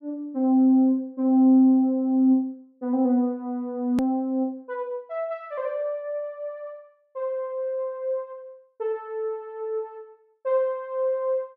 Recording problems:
hard cut with a click; at 4 s

